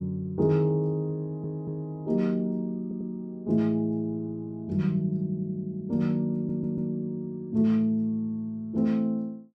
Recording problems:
audio stuttering; at 1 s, at 3 s and at 6.5 s

